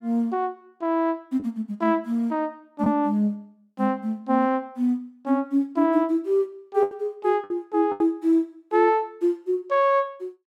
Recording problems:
packet loss; 3% of the sound replaced, filled with the last packet

